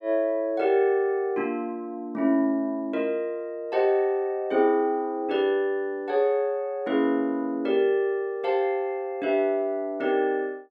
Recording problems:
none

